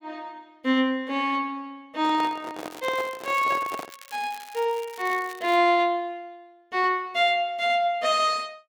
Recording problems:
handling noise; from 2 to 4 s; peak -5 dB vs average level
crackle; from 2.5 to 5.5 s; loose cable, SNR 21 dB

